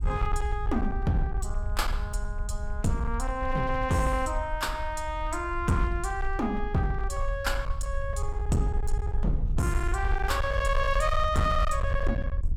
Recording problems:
distorted audio; hard clipping, uneven, signal-to-distortion ratio 12 dB
wind on the microphone; below 64 Hz, SNR 3 dB

